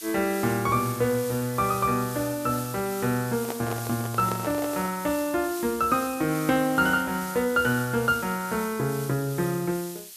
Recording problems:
hiss; slope +4 dB per octave, SNR 12 dB
handling noise; from 3.5 to 5 s; peak -4 dB vs average level

